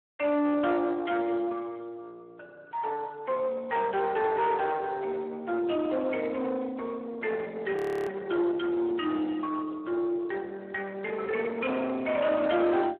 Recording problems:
telephone audio; 260 Hz to 3.2 kHz, Speex
distorted audio; soft clipping, signal-to-distortion ratio 8 dB
frozen audio; at 8 s

